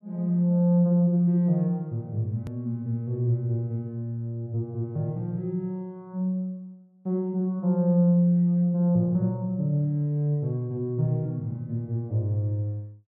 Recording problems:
click at an edit; at 2.5 s

